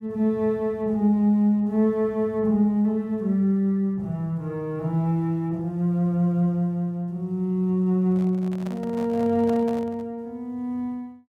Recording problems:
microphone handling noise; from 8 to 10 s; peak -11 dB vs average level

